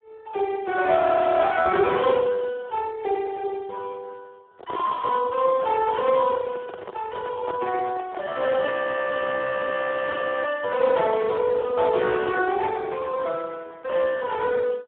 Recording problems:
telephone audio; 300 Hz to 2.6 kHz, Speex
audio freezing; at 1 s and at 8.5 s for 1.5 s
microphone handling noise; from 4.5 to 8.5 s; peak -5 dB vs average level

